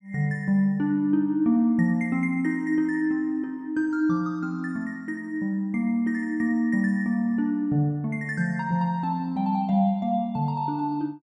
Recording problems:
none

